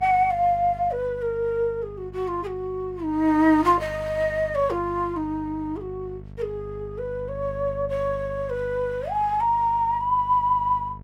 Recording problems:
hum; 50 Hz, harmonics up to 700 Hz, SNR 16 dB

